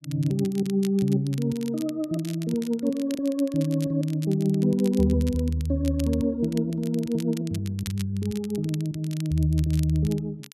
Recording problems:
crackle; vinyl, SNR 19 dB

